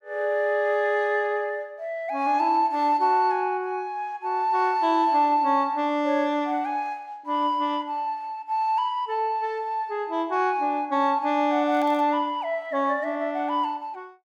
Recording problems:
crackling; at 12 s; loose cable, SNR 30 dB

